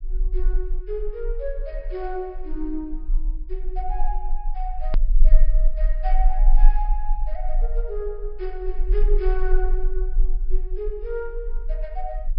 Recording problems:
low-pass filter; nothing above 5.5 kHz
rumble; below 34 Hz, strongest tone 20 Hz, SNR -7 dB
click at an edit; at 5 s

